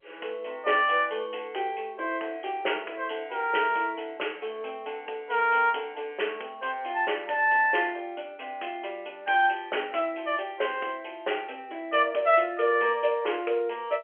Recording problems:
telephone audio; 340 Hz to 3.2 kHz, G.711

